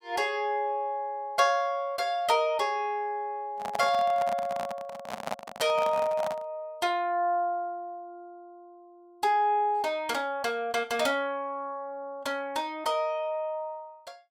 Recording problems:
handling noise; from 3.5 to 6.5 s; peak 0 dB vs average level

